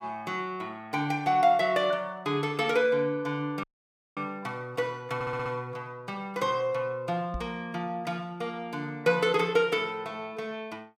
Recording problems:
dropout; at 3.5 s for 0.5 s
audio stuttering; at 5 s
microphone bump; at 7.5 s; peak -1 dB vs average level

